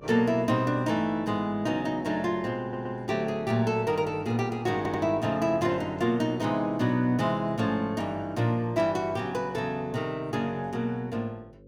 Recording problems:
hum; 50 Hz, harmonics up to 550 Hz, SNR 25 dB
stutter; at 2.5 s and at 5 s

